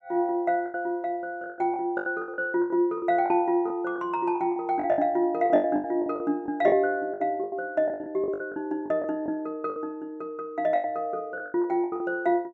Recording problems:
packet loss; 16% of the sound replaced, filled with the last packet

